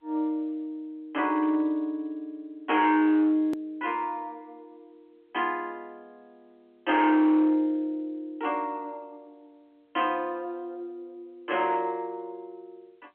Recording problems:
telephone audio; 240 Hz to 3.3 kHz, G.711
distortion; hard clipping, signal-to-distortion ratio 11 dB
click at an edit; at 3.5 s

